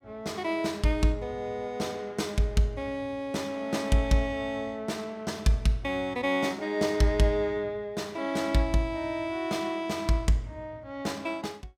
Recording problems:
none

